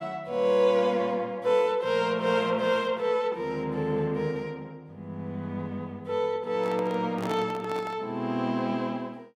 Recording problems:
handling noise; from 6.5 to 8 s; peak -4 dB vs average level

